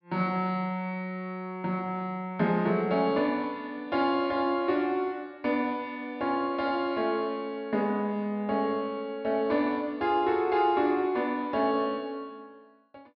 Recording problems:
treble cut off; nothing above 5.5 kHz

